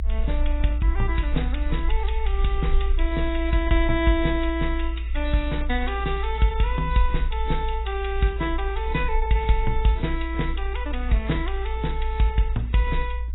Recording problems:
codec artefacts; AAC, log-spectral distance 3 dB, nothing above 3.9 kHz
rumble; below 58 Hz, SNR 2 dB

